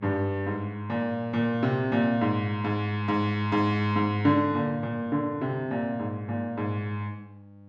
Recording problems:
electrical hum; 50 Hz, harmonics up to 800 Hz, SNR 23 dB

